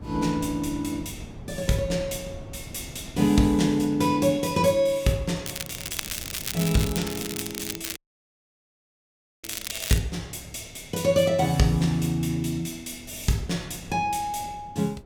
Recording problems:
wind on the microphone; below 270 Hz, SNR 19 dB
crackle; from 5.5 to 10 s; loose cable, SNR 7 dB
audio cutting out; at 8 s for 1.5 s

